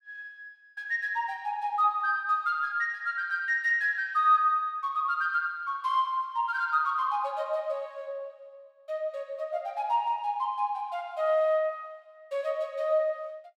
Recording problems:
none

